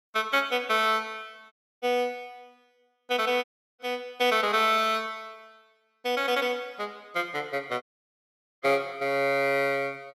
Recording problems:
audio cutting out; at 1.5 s, at 3.5 s and at 8 s for 1 s

